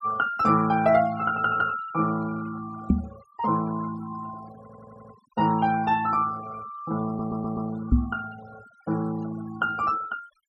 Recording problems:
noise reduction artefacts; signal-to-artefact ratio 18 dB
knock on the microphone; at 3 s and at 8 s; peak +9 dB vs average level
stutter; at 4.5 s and at 7 s

